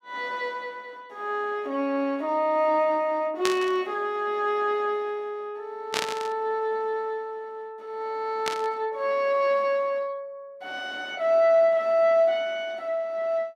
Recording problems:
static burst; at 3.5 s, at 6 s and at 8.5 s; peak +3 dB vs average level

